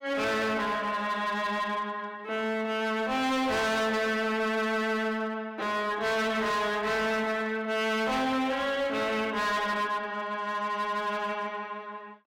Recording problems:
distortion; hard clipping, uneven, signal-to-distortion ratio 7 dB

